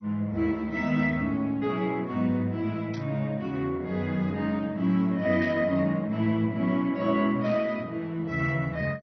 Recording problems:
lossy codec; MP2, log-spectral distance 2 dB, nothing above 6 kHz
static burst; at 3 s, at 5.5 s and at 7.5 s; peak -13 dB vs average level

